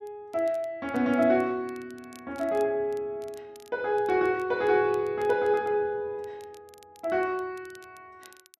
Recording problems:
crackling; vinyl, SNR 30 dB

